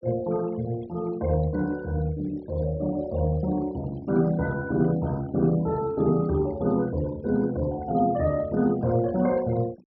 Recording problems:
treble cut off; nothing above 5.3 kHz
noise reduction artefacts; signal-to-artefact ratio 21 dB

